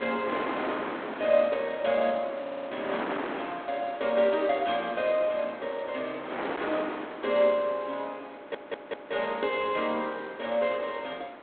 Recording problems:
phone line; 220 Hz to 3.7 kHz, G.726
wind on the microphone; below 1.5 kHz, SNR 9 dB
audio stuttering; at 2.5 s and at 8.5 s

